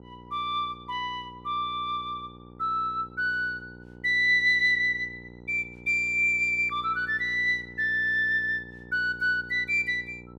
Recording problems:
hum; 60 Hz, harmonics up to 1 kHz, SNR 22 dB

